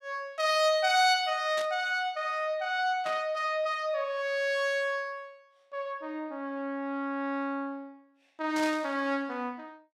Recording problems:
static burst; at 1.5 s, at 3 s and at 8.5 s; peak -6 dB vs average level

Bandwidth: 16.5 kHz